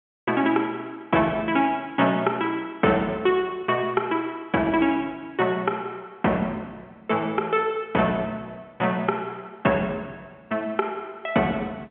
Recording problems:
phone line; 220 Hz to 3.5 kHz, G.711

